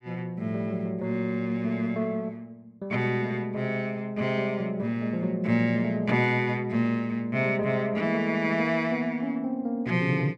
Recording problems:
none

